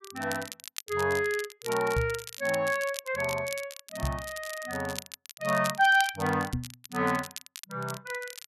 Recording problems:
crackle; vinyl, SNR 12 dB
microphone thump; at 2 s, at 4 s and at 6.5 s; peak +2 dB vs average level

